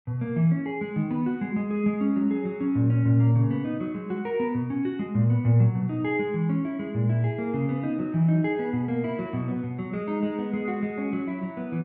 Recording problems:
none

